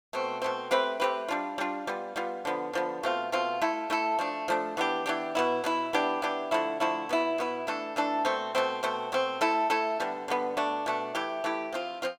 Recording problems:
none

